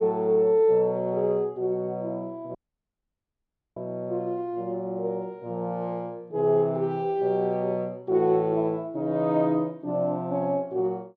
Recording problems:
audio cutting out; at 2.5 s for 1 s

